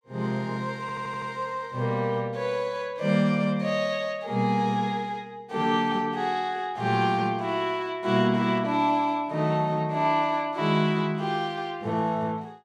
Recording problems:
stutter; at 1 s

